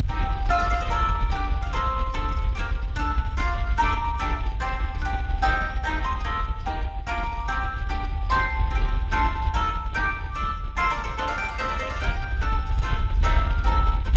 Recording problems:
lossy codec; Speex, log-spectral distance 2 dB
rumble; below 80 Hz, SNR 2 dB

